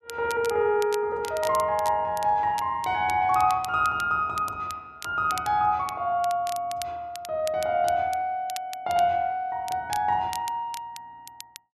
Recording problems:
crackle; vinyl, SNR 17 dB

